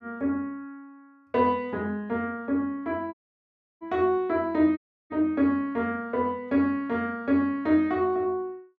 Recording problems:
audio cutting out; at 3 s for 0.5 s and at 5 s

